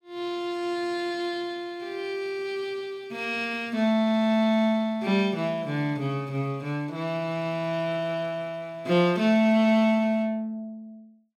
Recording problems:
none

